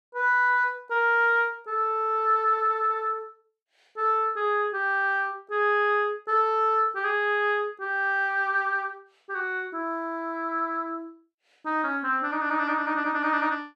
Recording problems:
none

